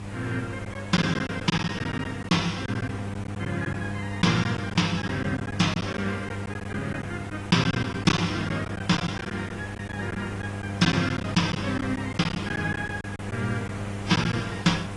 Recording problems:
codec artefacts; AAC, then AAC, log-spectral distance 5 dB, nothing above 10.4 kHz
hum; 50 Hz, harmonics up to 1 kHz, SNR 8 dB
background hiss; SNR 12 dB
packet loss; 9% of the sound replaced, filled with silence

